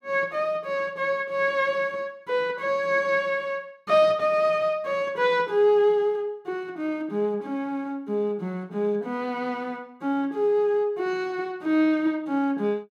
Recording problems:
none

